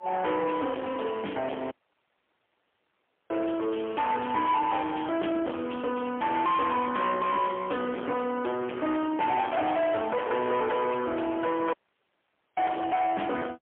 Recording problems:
telephone audio; 280 Hz to 3.3 kHz, AMR-NB, then MP3
distortion; soft clipping, signal-to-distortion ratio 8 dB
dropout; at 1.5 s for 1.5 s and at 12 s for 1 s

